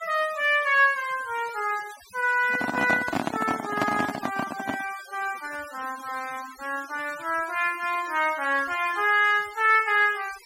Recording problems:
noise reduction artefacts; signal-to-artefact ratio 17 dB
handling noise; from 2.5 to 5 s; peak +3 dB vs average level

